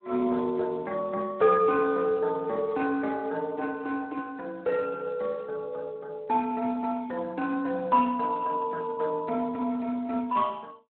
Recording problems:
telephone audio; 260 Hz to 2.2 kHz, Speex

